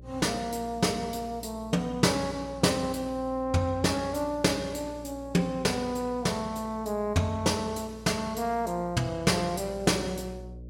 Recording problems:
hum; 60 Hz, harmonics up to 600 Hz, SNR 18 dB

